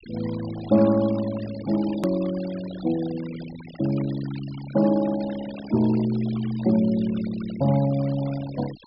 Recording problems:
treble cut off; nothing above 5.2 kHz
denoising artefacts; signal-to-artefact ratio 17 dB
hard cut with a click; at 2 s

